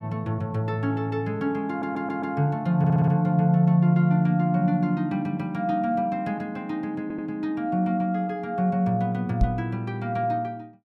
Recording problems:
audio stuttering; at 1.5 s, at 3 s and at 7 s
microphone thump; at 9.5 s; peak +5 dB vs average level

